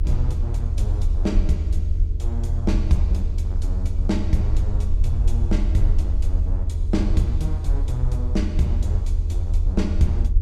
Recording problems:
mains hum; 50 Hz, harmonics up to 450 Hz, SNR 12 dB
rumble; below 78 Hz, SNR -3 dB

